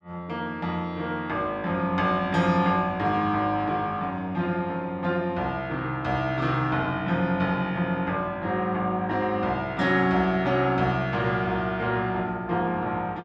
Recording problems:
none

